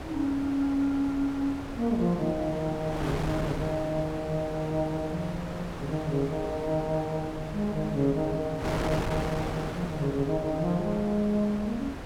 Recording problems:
wind noise; below 990 Hz, SNR 7 dB

